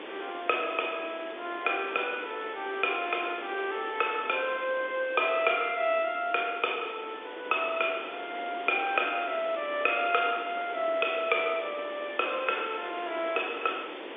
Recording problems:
phone line; 300 Hz to 3.6 kHz, G.711
background hiss; SNR 12 dB

